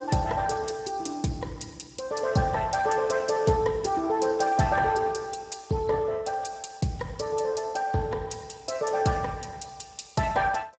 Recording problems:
codec artefacts; Speex, log-spectral distance 5 dB, nothing above 7.8 kHz

